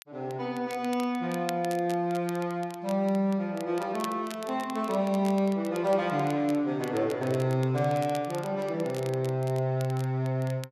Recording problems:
crackle; vinyl, SNR 19 dB

